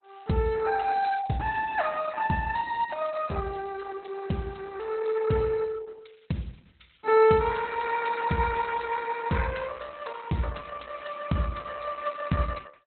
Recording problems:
lossy compression; Opus, log-spectral distance 6 dB, nothing above 4.1 kHz

